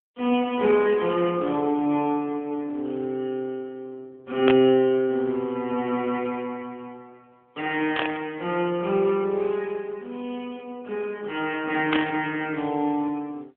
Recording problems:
phone line; 220 Hz to 3.4 kHz, AMR-NB
burst of static; at 4.5 s, at 8 s and at 12 s; peak +4 dB vs average level

